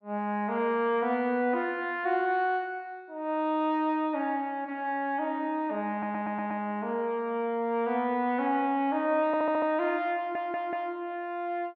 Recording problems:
stutter; at 6 s, at 9.5 s and at 10 s

